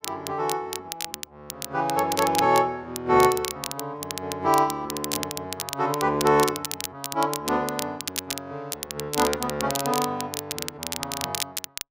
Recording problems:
crackle; vinyl, SNR 7 dB

